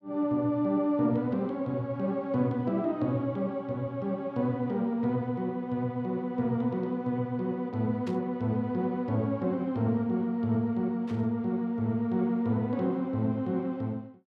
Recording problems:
burst of static; at 8 s and at 11 s; peak -13 dB vs average level

